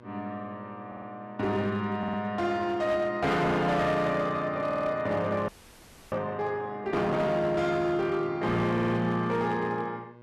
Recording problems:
distortion; hard clipping, signal-to-distortion ratio 12 dB
electrical hum; 60 Hz, harmonics up to 2 kHz, SNR 23 dB
audio stuttering; 4 times, first at 1 s
audio freezing; at 5.5 s for 0.5 s

